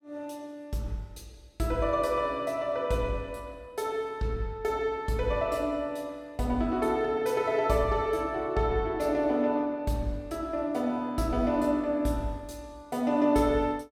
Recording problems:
none

